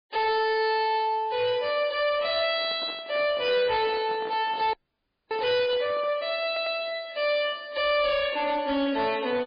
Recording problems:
lossy codec; MP3, log-spectral distance 3 dB, nothing above 4 kHz
distorted audio; hard clipping, signal-to-distortion ratio 11 dB
handling noise; from 2.5 to 6 s; peak -12 dB vs average level
audio freezing; at 4.5 s for 0.5 s
audio stuttering; at 6.5 s

